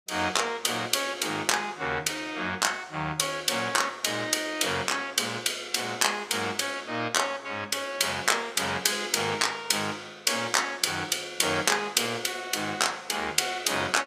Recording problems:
none

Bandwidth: 15.5 kHz